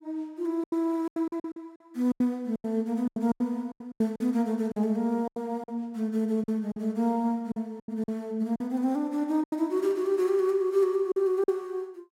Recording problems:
packet loss; 12% of the sound replaced, filled with silence

